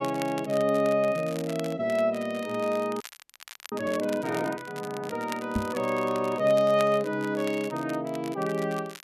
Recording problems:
crackle; vinyl, SNR 17 dB
frozen audio; at 3 s for 0.5 s
microphone thump; at 5.5 s; peak +2 dB vs average level

